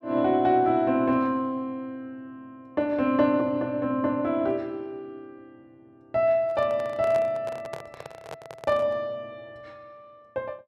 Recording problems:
handling noise; from 6.5 to 9 s; peak -7 dB vs average level

